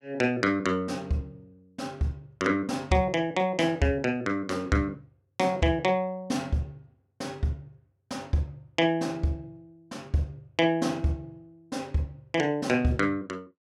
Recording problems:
none

